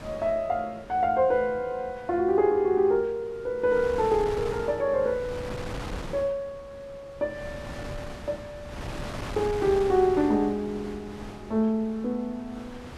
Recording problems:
wind noise; below 1.1 kHz, SNR 14 dB

